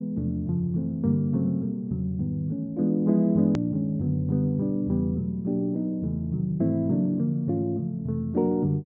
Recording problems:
treble missing; nothing above 8 kHz
hard cut with a click; at 3.5 s

